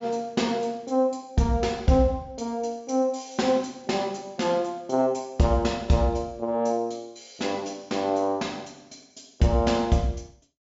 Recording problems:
treble cut off; nothing above 7.4 kHz

